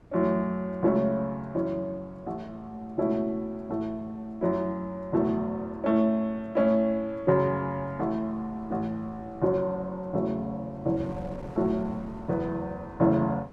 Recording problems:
wind noise; below 390 Hz, SNR 20 dB

